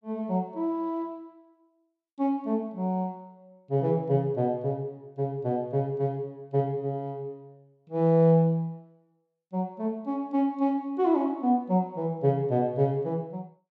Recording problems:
none

